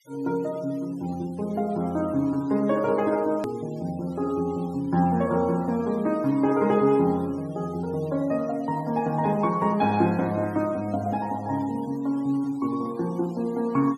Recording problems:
noise reduction artefacts; signal-to-artefact ratio 25 dB
click at an edit; at 3.5 s

